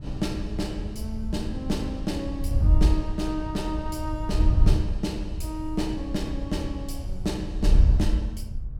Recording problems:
wind noise; below 76 Hz, SNR -3 dB

